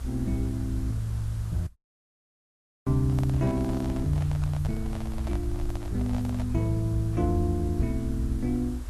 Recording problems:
lossy codec; Vorbis, log-spectral distance 2 dB, nothing above 13.1 kHz
background hiss; slope -4 dB per octave, SNR 20 dB
rumble; below 66 Hz, SNR 6 dB
dropout; at 1.5 s for 1 s
microphone handling noise; from 3 to 6.5 s; peak -8 dB vs average level

